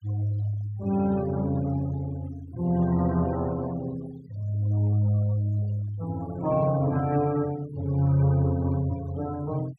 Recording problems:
denoising artefacts; signal-to-artefact ratio 22 dB

